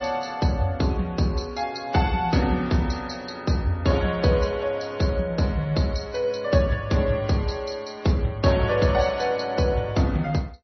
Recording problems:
lossy compression; MP3, then MP3, log-spectral distance 3 dB, nothing above 5.8 kHz

